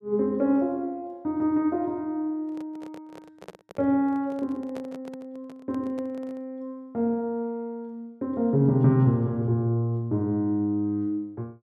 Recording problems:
handling noise; from 2.5 to 6.5 s; peak -10 dB vs average level

